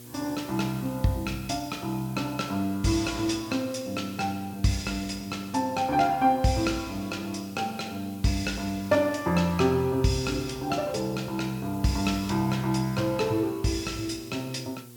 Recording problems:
hum; 60 Hz, harmonics up to 840 Hz, SNR 23 dB
background hiss; slope -1 dB per octave, SNR 21 dB

